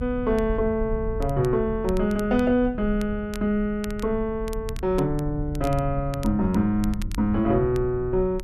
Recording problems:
low-frequency rumble; below 84 Hz, strongest tone 36 Hz, SNR 10 dB
crackling; vinyl, SNR 22 dB

